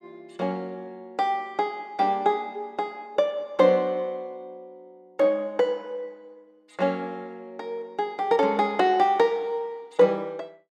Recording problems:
none

